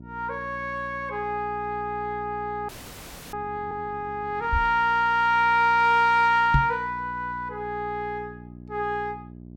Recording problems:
hum; 60 Hz, harmonics up to 660 Hz, SNR 19 dB
audio freezing; at 2.5 s for 0.5 s
microphone bump; at 4.5 s and at 6.5 s; peak +6 dB vs average level

